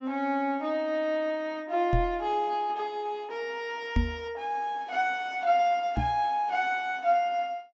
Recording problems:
low-pass filter; nothing above 8 kHz
microphone bump; at 2 s, at 4 s and at 6 s; peak +5 dB vs average level

